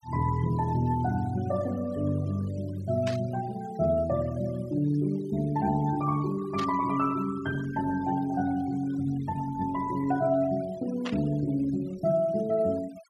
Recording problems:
noise reduction artefacts; signal-to-artefact ratio 21 dB
burst of static; at 3 s, at 6.5 s and at 11 s; peak -4 dB vs average level

